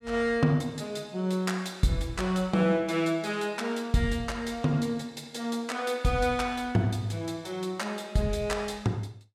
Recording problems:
none

